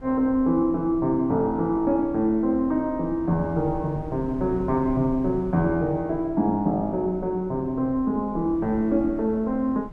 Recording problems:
wind noise; below 160 Hz, SNR 18 dB

